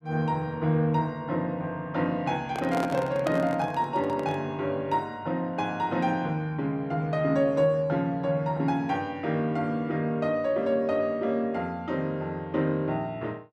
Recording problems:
handling noise; from 2.5 to 4.5 s; peak -1 dB vs average level

